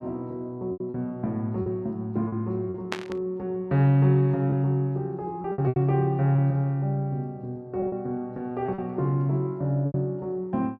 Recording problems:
packet loss; 6% of the sound replaced, filled with repeated pitch periods
burst of static; at 3 s; peak +1 dB vs average level

